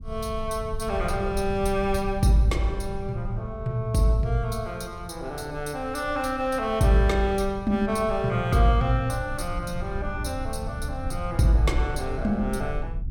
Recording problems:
low-frequency rumble; below 88 Hz, SNR 10 dB

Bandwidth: 17 kHz